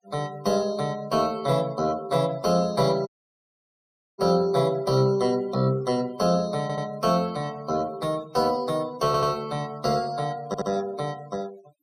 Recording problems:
denoising artefacts; signal-to-artefact ratio 23 dB
dropout; at 3 s for 1 s
audio stuttering; at 6.5 s, at 9 s and at 10 s

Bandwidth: 15 kHz